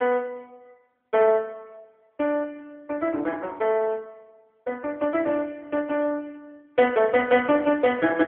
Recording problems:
telephone audio; 240 Hz to 3.3 kHz, AMR-NB

